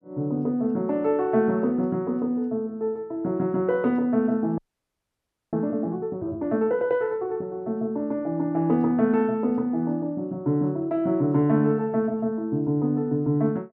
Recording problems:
audio freezing; at 4.5 s for 1 s

